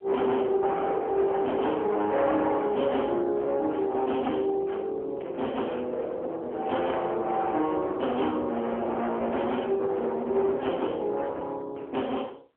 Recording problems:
telephone audio; 320 Hz to 2.9 kHz, AMR-NB
distortion; hard clipping, signal-to-distortion ratio 10 dB

